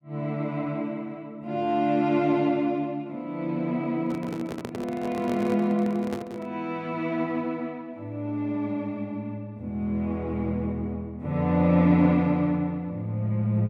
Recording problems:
microphone handling noise; from 4 to 6.5 s; peak -4 dB vs average level

